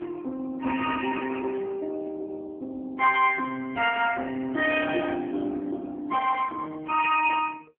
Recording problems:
phone line; 260 Hz to 2.8 kHz, AMR-NB

